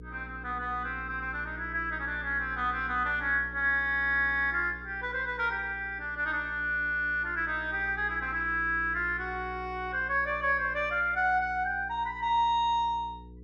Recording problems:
electrical hum; 60 Hz, harmonics up to 480 Hz, SNR 17 dB

